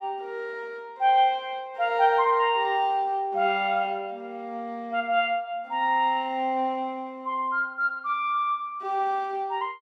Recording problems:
none

